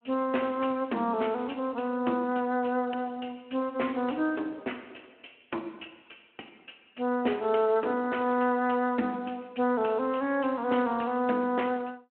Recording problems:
telephone audio; 220 Hz to 3.2 kHz, Speex

